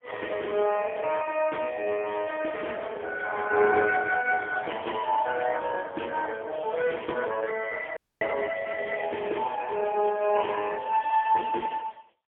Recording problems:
phone line; 320 Hz to 2.2 kHz, AMR-NB, then MP3
audio cutting out; at 8 s

